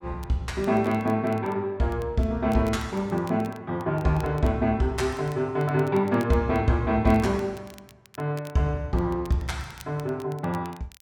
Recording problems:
crackle; vinyl, SNR 26 dB

